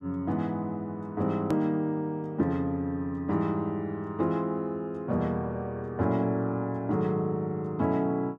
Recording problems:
hard cut with a click; at 1.5 s

